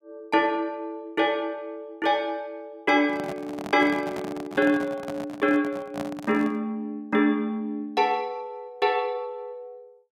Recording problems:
microphone handling noise; from 3 to 6.5 s; peak -4 dB vs average level

